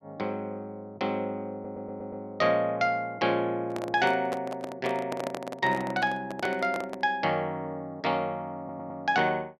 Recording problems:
stutter; at 1.5 s and at 8.5 s
microphone handling noise; from 3.5 to 7 s; peak -1 dB vs average level

